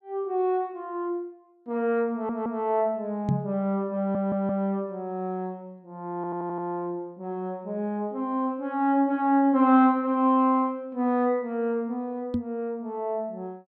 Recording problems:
stutter; at 2 s, at 4 s and at 6 s
microphone bump; at 3.5 s and at 12 s; peak +4 dB vs average level

